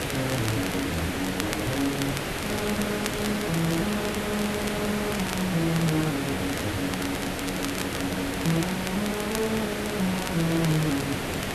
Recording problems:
background hiss; slope -4 dB per octave, SNR 1 dB
crackling; vinyl, SNR 9 dB

